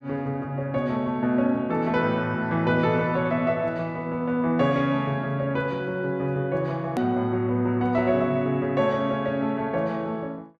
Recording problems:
edit click; at 7 s

